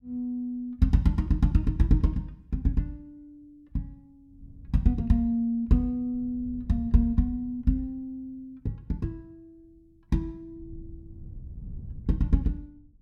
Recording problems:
wind on the microphone; below 120 Hz, SNR 18 dB

